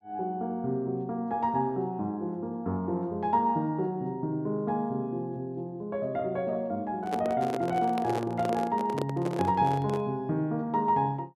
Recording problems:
handling noise; from 7 to 10 s; peak +1 dB vs average level

